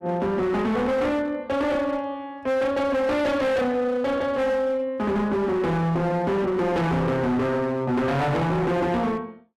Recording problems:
distortion; hard clipping, signal-to-distortion ratio 7 dB

